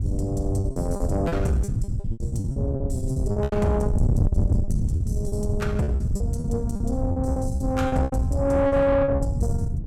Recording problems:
distorted audio; soft clipping, signal-to-distortion ratio 12 dB
wind noise; below 130 Hz, SNR 0 dB
lost packets; 14% of the sound replaced, filled with repeated pitch periods

